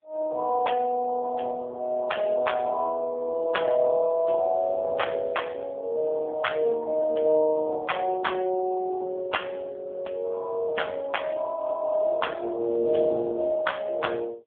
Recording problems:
phone line; 260 Hz to 3.4 kHz, AMR-NB

